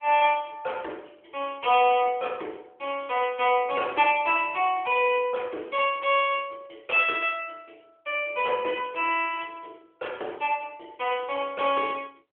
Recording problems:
phone line; 320 Hz to 3.4 kHz, AMR-NB

